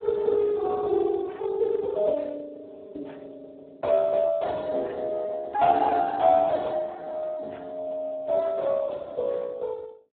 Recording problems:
phone line; 300 Hz to 2.1 kHz, Speex

